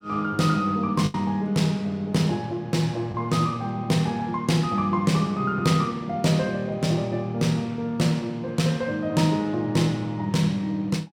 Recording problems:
lost packets; 0.9% of the sound replaced, filled with the last packet

